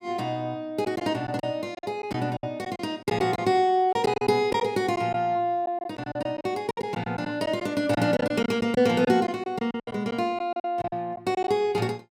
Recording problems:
lost packets; 11% of the sound replaced, filled with silence

